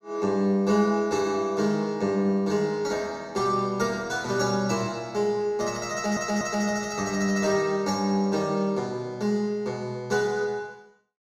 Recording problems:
audio stuttering; at 6 s

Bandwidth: 15.5 kHz